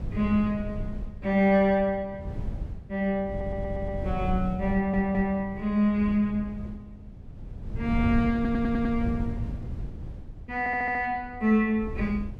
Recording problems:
wind on the microphone; below 130 Hz, SNR 10 dB
stutter; 4 times, first at 3.5 s

